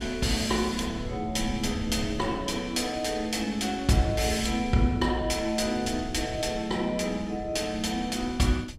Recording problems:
rumble; below 140 Hz, SNR 13 dB

